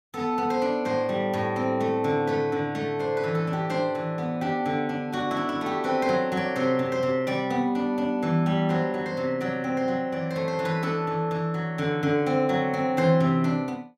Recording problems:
none

